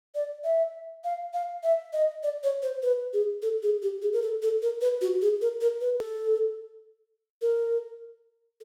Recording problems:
click at an edit; at 6 s

